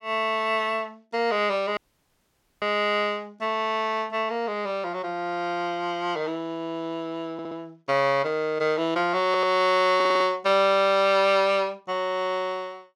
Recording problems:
dropout; at 2 s for 1 s
stutter; at 7.5 s, at 9.5 s and at 10 s

